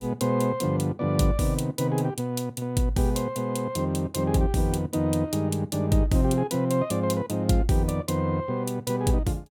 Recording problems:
none

